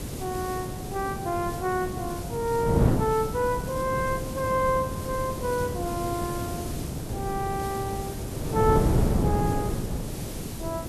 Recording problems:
hiss; slope +1 dB per octave, SNR 12 dB
wind noise; below 340 Hz, SNR 1 dB

